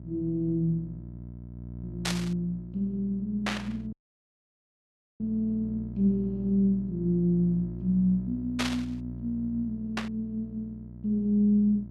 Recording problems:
electrical hum; 60 Hz, harmonics up to 660 Hz, SNR 12 dB
static burst; 4 times, first at 2 s; peak +2 dB vs average level
dropout; at 4 s for 1.5 s

